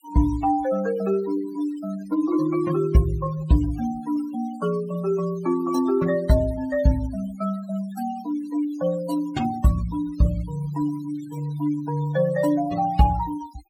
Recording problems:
denoising artefacts; signal-to-artefact ratio 17 dB

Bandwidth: 17 kHz